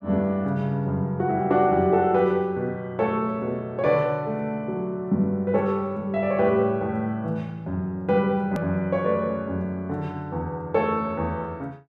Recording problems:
hard cut with a click; at 8.5 s

